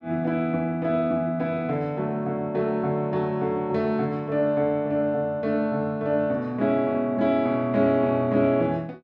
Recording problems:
none

